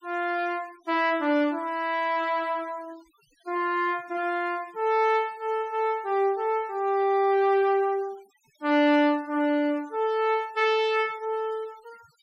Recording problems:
noise reduction artefacts; signal-to-artefact ratio 27 dB

